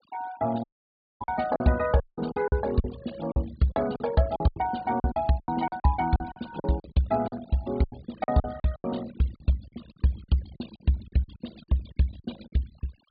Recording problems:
treble cut off; nothing above 4.6 kHz
denoising artefacts; signal-to-artefact ratio 19 dB
lost packets; 15% of the sound replaced, filled with silence
audio cutting out; at 0.5 s for 0.5 s and at 2 s

